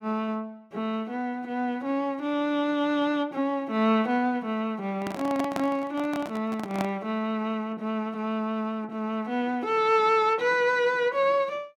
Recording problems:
handling noise; from 5 to 7 s; peak -1 dB vs average level

